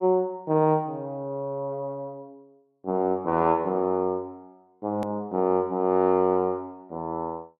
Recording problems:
edit click; at 5 s

